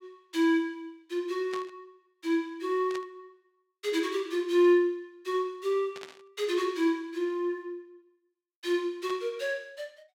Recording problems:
static burst; 4 times, first at 1.5 s; peak -8 dB vs average level

